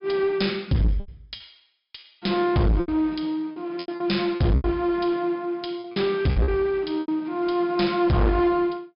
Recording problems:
treble cut off; nothing above 5.5 kHz
distorted audio; hard clipping, uneven, signal-to-distortion ratio 6 dB
packet loss; 9% of the sound replaced, filled with repeated pitch periods

